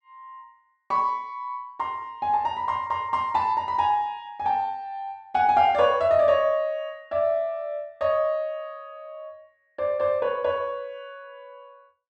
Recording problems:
none

